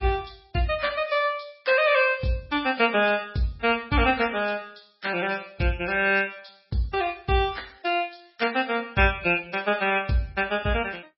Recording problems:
lossy compression; MP3, log-spectral distance 5 dB, nothing above 5.3 kHz

